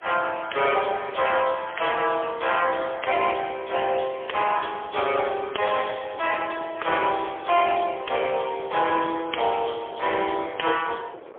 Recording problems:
telephone audio; 340 Hz to 3.4 kHz, AMR-NB, then MP3
wind noise; below 730 Hz, SNR 20 dB

